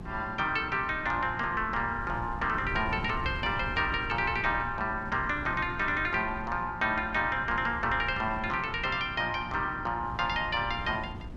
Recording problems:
hum; 60 Hz, harmonics up to 360 Hz, SNR 19 dB
wind noise; below 170 Hz, SNR 13 dB

